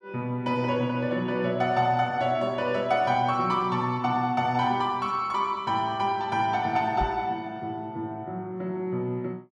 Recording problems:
microphone thump; at 7 s; peak -3 dB vs average level

